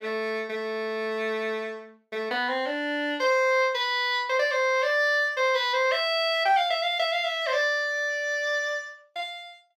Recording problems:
none

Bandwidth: 17 kHz